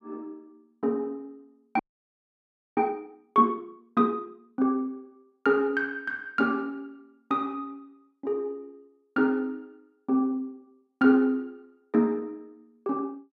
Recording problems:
frozen audio; at 2 s for 1 s

